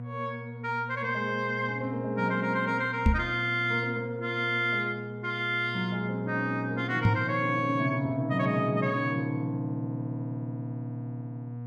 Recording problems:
hum; 60 Hz, harmonics up to 720 Hz, SNR 9 dB
microphone bump; at 3 s and at 7 s; peak +9 dB vs average level

